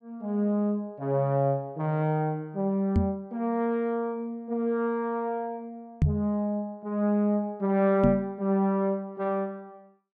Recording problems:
microphone bump; at 3 s, at 6 s and at 8 s; peak +8 dB vs average level

